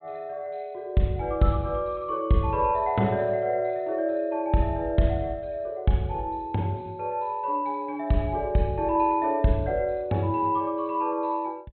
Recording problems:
treble missing; nothing above 4 kHz

